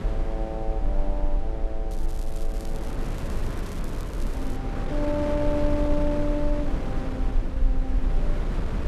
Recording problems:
rumble; below 38 Hz, strongest tone 22 Hz, SNR 0 dB
wind on the microphone; below 480 Hz, SNR 2 dB
crackle; at 2 s and from 2.5 to 4.5 s; loose cable, SNR 17 dB

